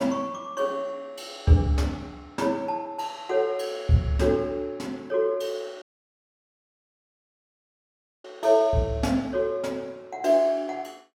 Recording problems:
dropout; at 6 s for 2.5 s

